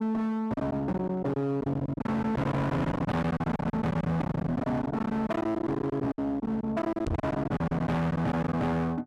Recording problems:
distorted audio; hard clipping, signal-to-distortion ratio 6 dB
lost packets; 15% of the sound replaced, filled with silence
microphone thump; at 7 s; peak +2 dB vs average level

